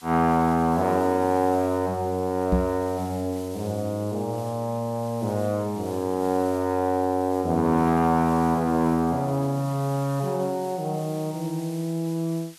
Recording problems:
background hiss; slope +3 dB per octave, SNR 21 dB
microphone thump; at 2.5 s; peak +5 dB vs average level

